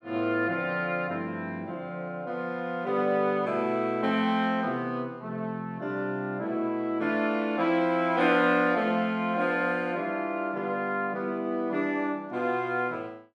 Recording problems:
none

